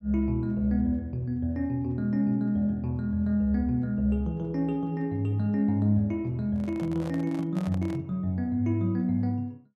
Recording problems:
handling noise; from 6.5 to 8 s; peak -9 dB vs average level

